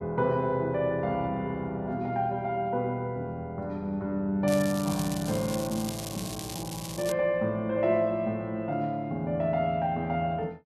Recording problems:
crackling; from 4.5 to 7 s; loose cable, SNR 10 dB

